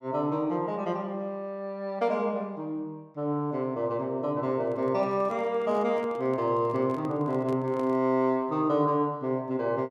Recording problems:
microphone handling noise; from 4.5 to 8 s; peak -9 dB vs average level

